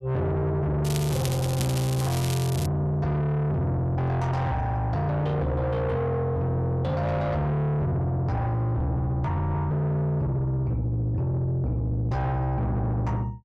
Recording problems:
distorted audio; soft clipping, signal-to-distortion ratio 6 dB
crackle; from 1 to 2.5 s; loose cable, SNR 10 dB

